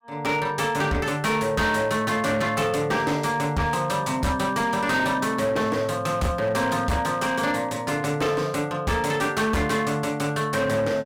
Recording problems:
distorted audio; hard clipping, uneven, signal-to-distortion ratio 11 dB

